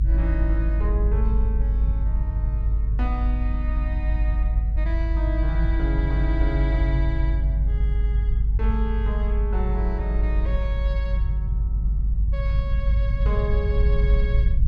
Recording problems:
low-frequency rumble; below 54 Hz, strongest tone 50 Hz, SNR -9 dB

